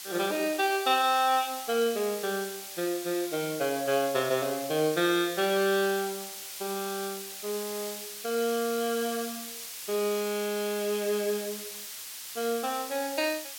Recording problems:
background hiss; slope +4 dB per octave, SNR 9 dB

